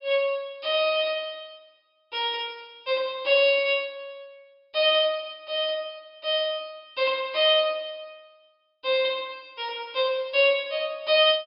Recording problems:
treble missing; nothing above 5.5 kHz

